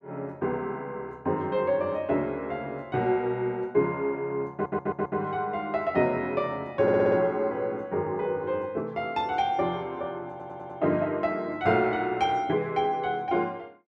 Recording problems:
audio stuttering; at 4.5 s, at 7 s and at 10 s

